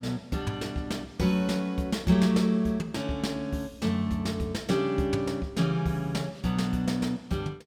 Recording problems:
none

